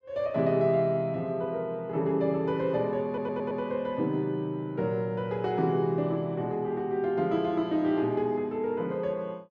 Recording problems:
stutter; at 3 s

